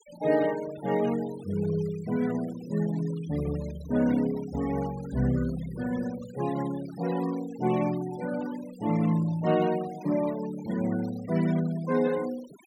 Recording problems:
denoising artefacts; signal-to-artefact ratio 18 dB

